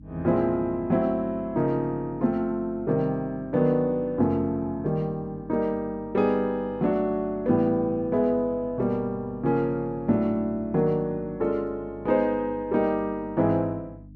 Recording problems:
electrical hum; 50 Hz, harmonics up to 300 Hz, SNR 21 dB

